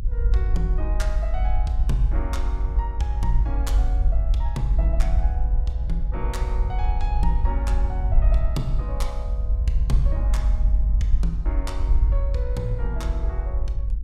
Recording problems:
rumble; below 52 Hz, strongest tone 50 Hz, SNR -8 dB

